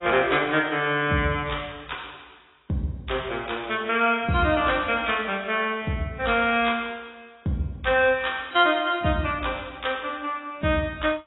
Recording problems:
codec artefacts; AAC, log-spectral distance 5 dB, nothing above 3.5 kHz

